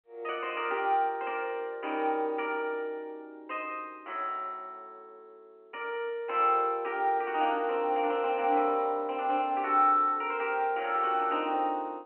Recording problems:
telephone audio; 240 Hz to 3.1 kHz, G.711

